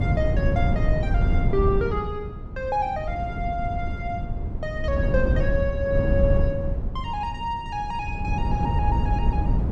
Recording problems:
wind on the microphone; below 130 Hz, SNR -2 dB

